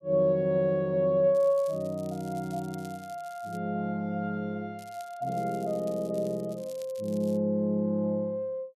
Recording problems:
crackling; from 1.5 to 3.5 s and from 5 to 7.5 s; loose cable, SNR 24 dB

